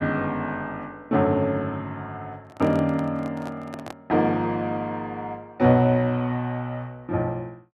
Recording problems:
microphone handling noise; from 2.5 to 4 s; peak -8 dB vs average level

